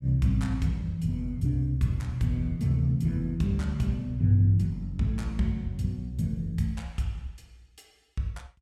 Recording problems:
none

